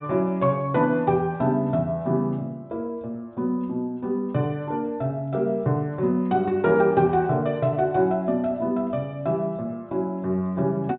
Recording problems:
treble missing; nothing above 4 kHz

